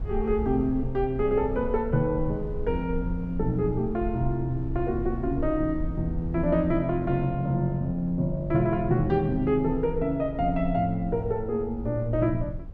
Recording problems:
rumble; below 70 Hz, SNR 10 dB

